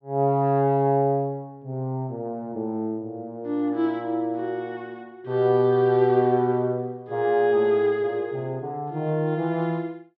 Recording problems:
none

